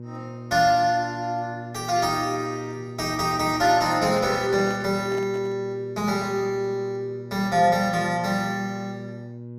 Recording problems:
mains hum; 60 Hz, harmonics up to 600 Hz, SNR 14 dB
handling noise; from 3.5 to 5.5 s; peak -11 dB vs average level

